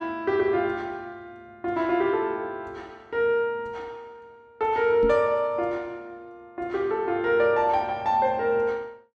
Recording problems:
microphone bump; at 5 s; peak -2 dB vs average level

